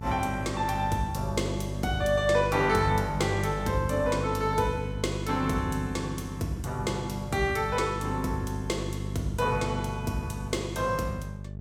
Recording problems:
mains hum; 50 Hz, harmonics up to 600 Hz, SNR 6 dB

